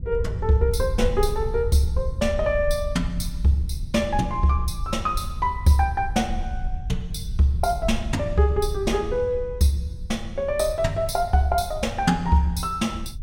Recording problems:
low-frequency rumble; below 78 Hz, SNR 8 dB

